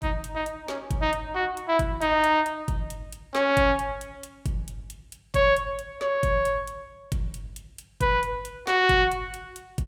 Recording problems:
none

